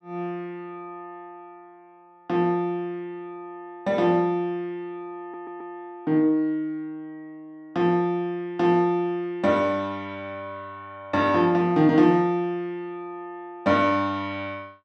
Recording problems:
audio stuttering; at 5 s

